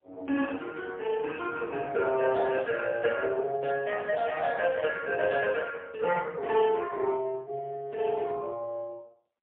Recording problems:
telephone audio; 170 Hz to 3.4 kHz, AMR-NB, then MP3

